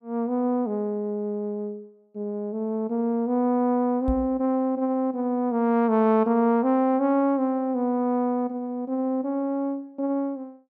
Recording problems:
microphone bump; at 4 s; peak -1 dB vs average level

